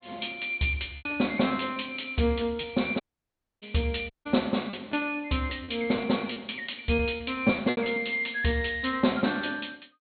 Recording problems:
treble cut off; nothing above 4.2 kHz
lost packets; 6% of the sound replaced, filled with repeated pitch periods
audio cutting out; at 3 s for 0.5 s and at 4 s

